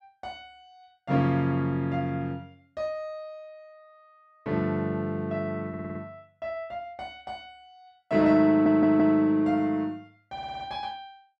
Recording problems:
audio stuttering; at 5.5 s, at 8.5 s and at 10 s

